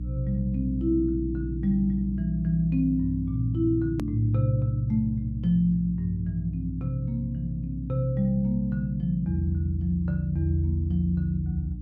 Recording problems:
hum; 60 Hz, harmonics up to 300 Hz, SNR 9 dB
click at an edit; at 4 s

